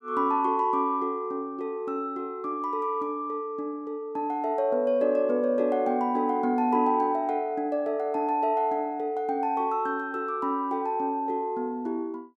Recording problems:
none

